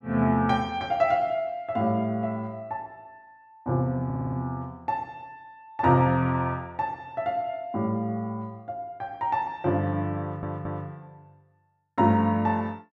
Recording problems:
audio stuttering; at 4 s and at 10 s

